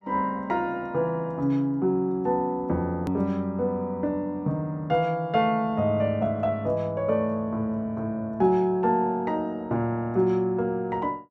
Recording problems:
hard cut with a click; at 3 s

